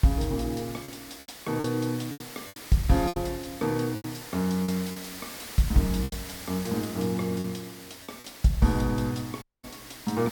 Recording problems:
hiss; slope -1 dB per octave, SNR 13 dB
lost packets; 7% of the sound replaced, filled with repeated pitch periods
dropout; at 9.5 s

